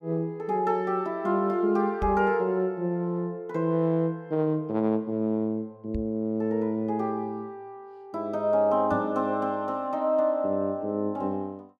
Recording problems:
microphone bump; at 2 s, at 6 s and at 9 s; peak -3 dB vs average level

